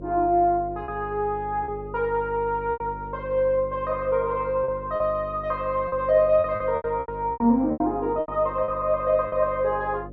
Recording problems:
electrical hum; 50 Hz, harmonics up to 600 Hz, SNR 16 dB
lost packets; 8% of the sound replaced, filled with repeated pitch periods

